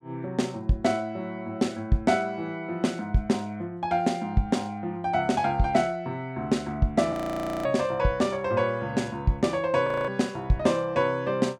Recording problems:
frozen audio; at 7 s for 0.5 s and at 10 s

